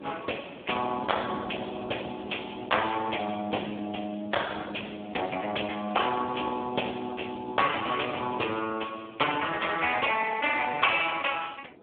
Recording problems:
phone line; 220 Hz to 3.6 kHz, Speex
wind on the microphone; below 540 Hz, SNR 19 dB

